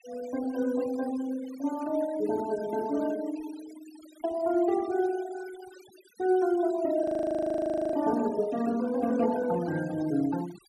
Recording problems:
denoising artefacts; signal-to-artefact ratio 18 dB
frozen audio; at 7 s for 1 s

